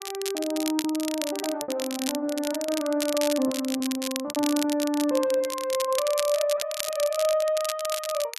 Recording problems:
crackling; vinyl, SNR 7 dB
lost packets; 6% of the sound replaced, filled with repeated pitch periods

